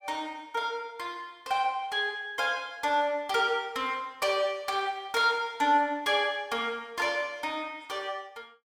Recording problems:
none

